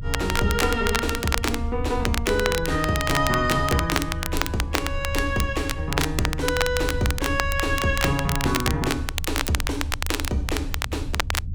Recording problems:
rumble; below 80 Hz, SNR 6 dB
crackling; vinyl, SNR 3 dB

